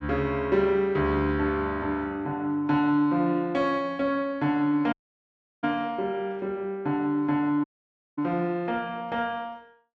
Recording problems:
dropout; at 5 s for 0.5 s and at 7.5 s for 0.5 s

